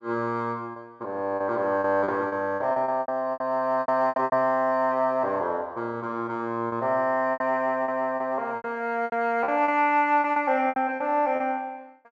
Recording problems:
lost packets; 12% of the sound replaced, filled with repeated pitch periods

